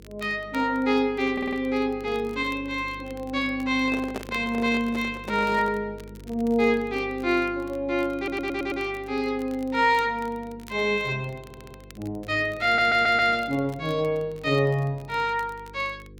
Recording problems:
hum; 50 Hz, harmonics up to 500 Hz, SNR 21 dB
crackling; vinyl, SNR 28 dB
audio stuttering; 4 times, first at 1.5 s
handling noise; from 4 to 6 s; peak -2 dB vs average level

